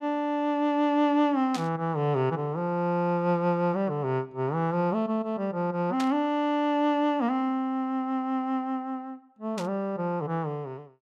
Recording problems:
static burst; at 1.5 s, at 6 s and at 9.5 s; peak -5 dB vs average level

